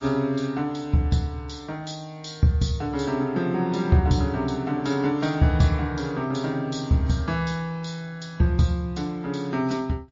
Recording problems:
codec artefacts; MP3, log-spectral distance 3 dB

